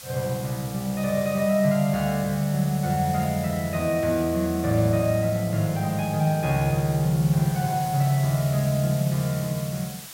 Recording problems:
background hiss; slope +2 dB per octave, SNR 15 dB

